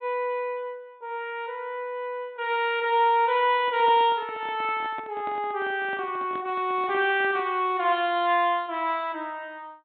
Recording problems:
low-pass filter; nothing above 4 kHz
handling noise; from 3.5 to 7.5 s; peak -12 dB vs average level

